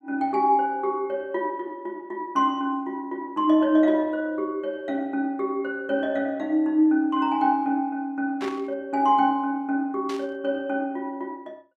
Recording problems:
burst of static; at 8.5 s and at 10 s; peak -8 dB vs average level

